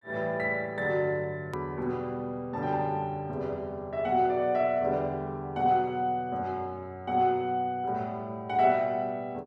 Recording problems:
hard cut with a click; at 1.5 s

